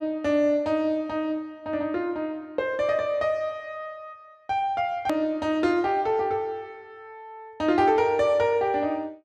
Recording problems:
edit click; at 5 s

